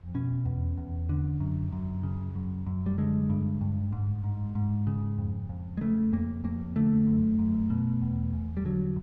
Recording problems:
low-frequency rumble; below 100 Hz, SNR 23 dB

